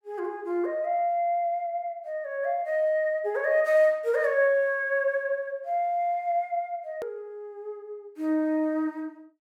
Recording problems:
click at an edit; at 7 s

